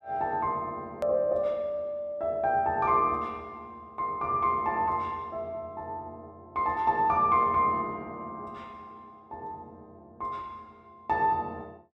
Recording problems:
hard cut with a click; at 1 s

